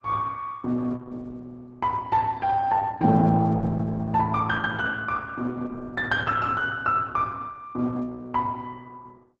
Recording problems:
lossy codec; Opus, log-spectral distance 3 dB, nothing above 7.8 kHz

